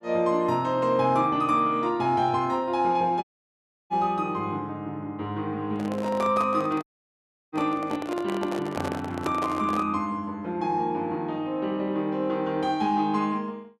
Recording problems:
audio cutting out; at 3 s for 0.5 s and at 7 s for 0.5 s
microphone handling noise; from 5.5 to 10 s; peak -1 dB vs average level

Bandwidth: 13 kHz